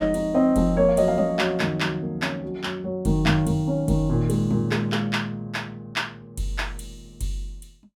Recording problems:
none

